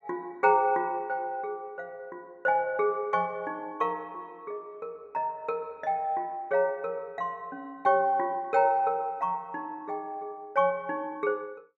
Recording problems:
none

